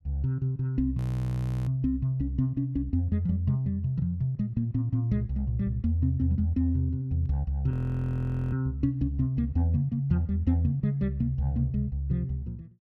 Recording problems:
audio freezing; at 1 s for 0.5 s and at 7.5 s for 1 s

